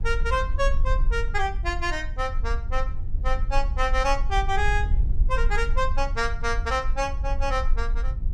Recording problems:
rumble; below 48 Hz, strongest tone 20 Hz, SNR 1 dB

